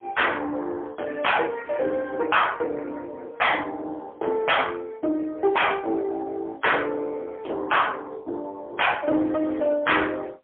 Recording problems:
phone line; 240 Hz to 3.4 kHz, AMR-NB, then MP3
distorted audio; soft clipping, signal-to-distortion ratio 8 dB

